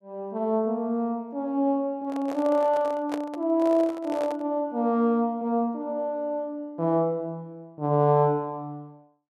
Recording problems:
microphone handling noise; from 2 to 4.5 s; peak -4 dB vs average level

